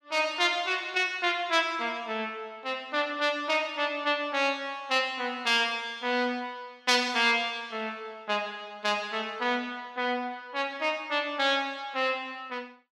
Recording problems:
none

